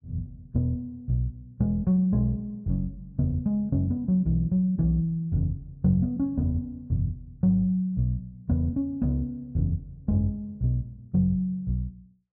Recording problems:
none

